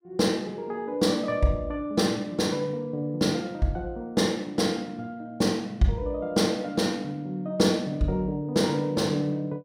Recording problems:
none

